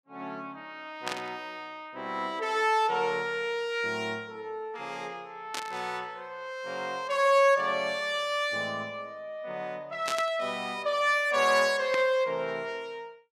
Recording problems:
static burst; 4 times, first at 1 s; peak 0 dB vs average level

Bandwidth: 15 kHz